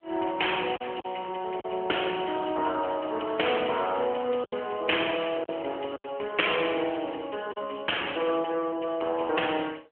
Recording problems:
phone line; 320 Hz to 3.2 kHz, AMR-NB
packet loss; 4% of the sound replaced, filled with silence

